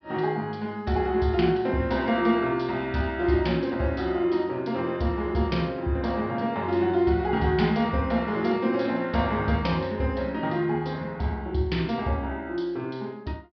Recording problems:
treble cut off; nothing above 5.5 kHz

